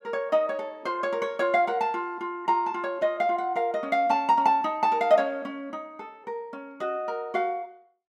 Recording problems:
none

